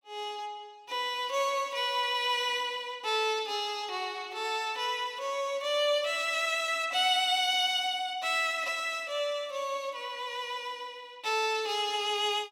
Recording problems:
none

